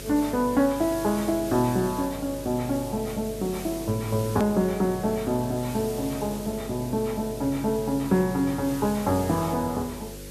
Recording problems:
hum; 50 Hz, harmonics up to 550 Hz, SNR 14 dB
hiss; slope +2 dB per octave, SNR 15 dB
edit click; at 4.5 s

